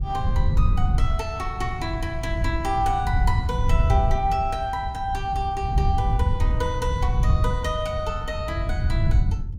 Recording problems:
wind noise; below 100 Hz, SNR -2 dB

